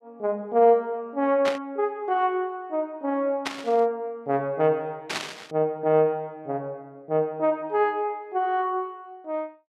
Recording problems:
burst of static; at 1.5 s, at 3.5 s and at 5 s; peak +1 dB vs average level

